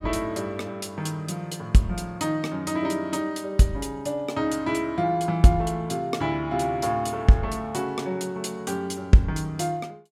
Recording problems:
none

